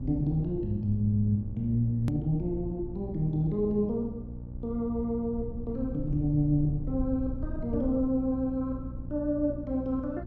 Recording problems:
electrical hum; 60 Hz, harmonics up to 600 Hz, SNR 12 dB
low-frequency rumble; below 86 Hz, SNR 13 dB
hard cut with a click; at 2 s

